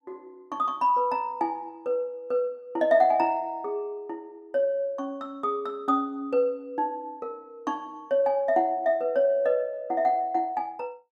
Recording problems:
none

